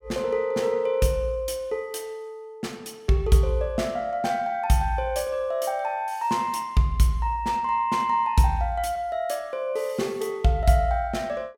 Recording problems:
none

